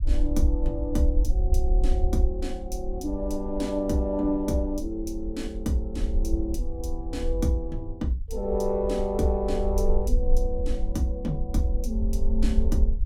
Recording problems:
rumble; below 54 Hz, SNR 1 dB

